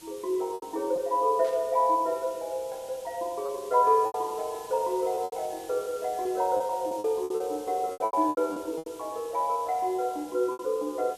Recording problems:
hiss; slope 0 dB per octave, SNR 20 dB
packet loss; 9% of the sound replaced, filled with repeated pitch periods
burst of static; at 1.5 s; peak -15 dB vs average level

